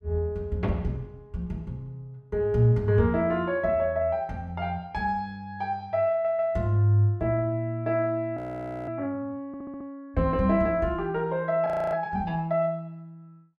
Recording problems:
stutter; at 6 s and at 9.5 s
audio freezing; at 8.5 s for 0.5 s and at 12 s

